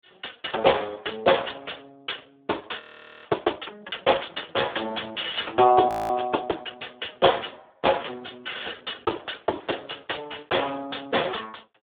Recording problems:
telephone audio; 320 Hz to 3.6 kHz, Speex
audio freezing; at 3 s and at 6 s

